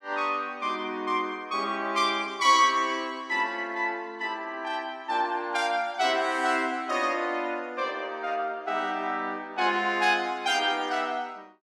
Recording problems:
none

